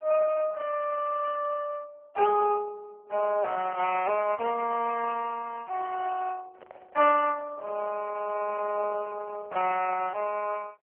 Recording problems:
telephone audio; 320 Hz to 2.9 kHz, AMR-NB
handling noise; from 6.5 to 9.5 s; peak -10 dB vs average level

